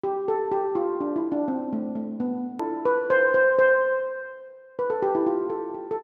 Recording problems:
edit click; at 2.5 s

